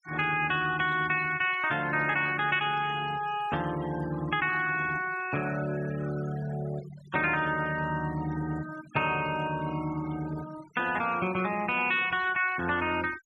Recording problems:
denoising artefacts; signal-to-artefact ratio 17 dB

